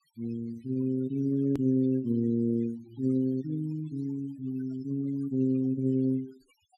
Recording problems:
noise reduction artefacts; signal-to-artefact ratio 25 dB
edit click; at 1.5 s

